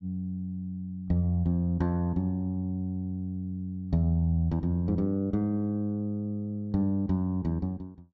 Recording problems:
treble missing; nothing above 8 kHz

